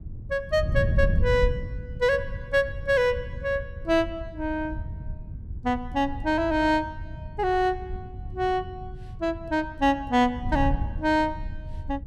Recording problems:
wind noise; below 110 Hz, SNR 8 dB

